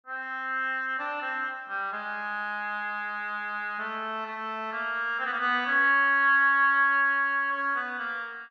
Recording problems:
none

